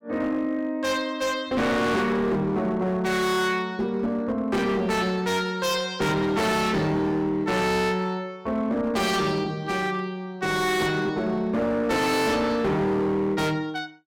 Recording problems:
distorted audio; hard clipping, signal-to-distortion ratio 7 dB

